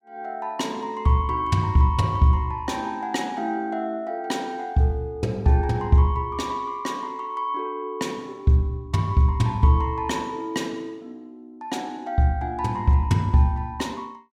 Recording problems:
none

